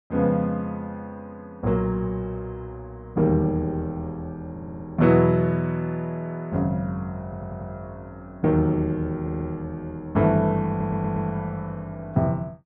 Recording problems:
stutter; 4 times, first at 4.5 s

